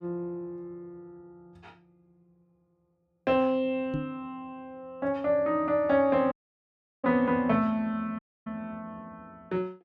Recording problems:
microphone thump; at 4 s; peak -1 dB vs average level
dropout; at 6.5 s for 0.5 s and at 8 s

